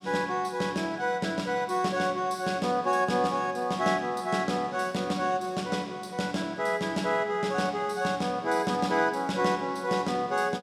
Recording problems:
none

